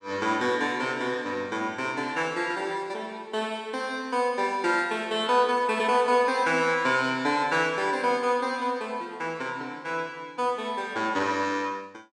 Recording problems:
none

